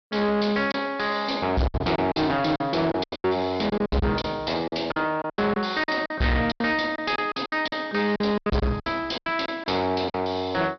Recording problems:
treble cut off; nothing above 5.5 kHz
distortion; soft clipping, signal-to-distortion ratio 6 dB
packet loss; 14% of the sound replaced, filled with silence

